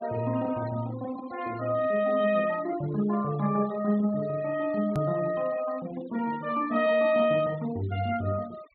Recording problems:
treble missing; nothing above 4.4 kHz
noise reduction artefacts; signal-to-artefact ratio 21 dB
edit click; at 5 s

